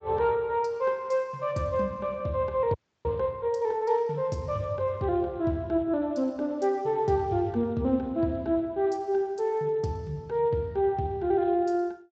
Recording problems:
lossy compression; Speex, log-spectral distance 2 dB
frozen audio; at 2.5 s

